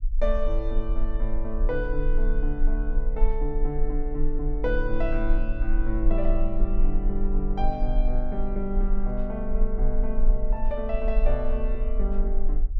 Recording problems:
rumble; below 34 Hz, strongest tone 20 Hz, SNR -2 dB

